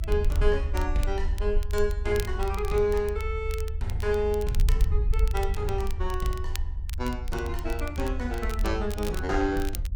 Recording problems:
low-frequency rumble; below 76 Hz, SNR 3 dB
wind noise; below 62 Hz, SNR 4 dB
crackling; vinyl, SNR 15 dB

